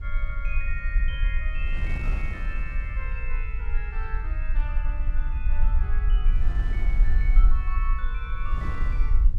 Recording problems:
low-frequency rumble; below 46 Hz, SNR -11 dB
wind noise; below 130 Hz, SNR 1 dB

